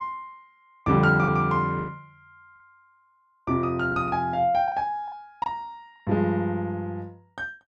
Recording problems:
packet loss; 6% of the sound replaced, filled with the last packet

